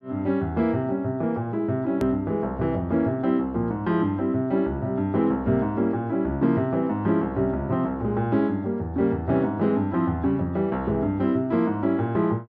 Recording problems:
edit click; at 2 s

